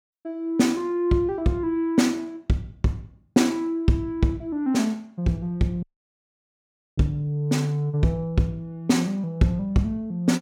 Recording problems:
dropout; at 6 s for 1 s

